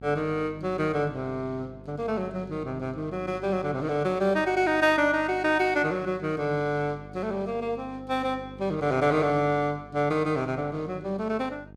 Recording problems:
hum; 50 Hz, harmonics up to 850 Hz, SNR 19 dB

